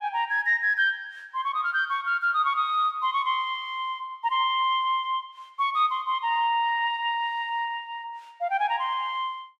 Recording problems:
none

